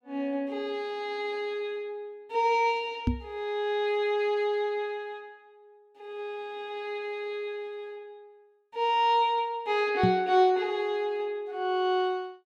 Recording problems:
microphone bump; at 3 s and at 10 s; peak +6 dB vs average level

